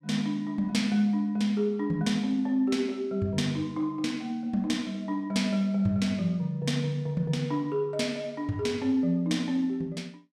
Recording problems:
none

